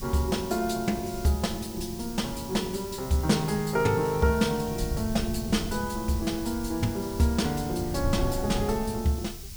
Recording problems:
hiss; slope +6 dB per octave, SNR 14 dB
wind on the microphone; below 110 Hz, SNR 11 dB

